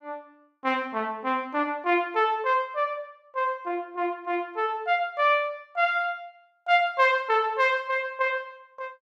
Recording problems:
none

